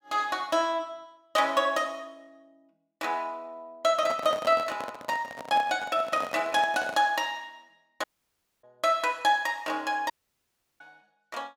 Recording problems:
handling noise; from 4 to 7 s; peak -5 dB vs average level
audio cutting out; at 8 s for 0.5 s and at 10 s for 0.5 s

